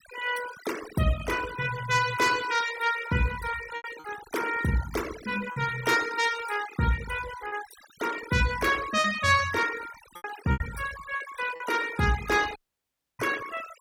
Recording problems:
denoising artefacts; signal-to-artefact ratio 12 dB
lost packets; 4% of the sound replaced, filled with repeated pitch periods
audio cutting out; at 13 s for 0.5 s

